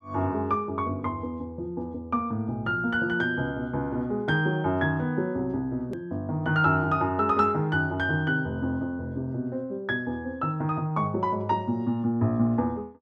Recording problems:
hard cut with a click; at 6 s

